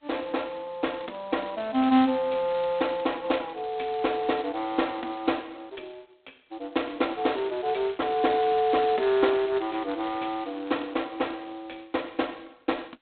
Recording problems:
telephone audio; 220 Hz to 3.9 kHz, G.726
crackle; from 7 to 11 s; loose cable, SNR 26 dB

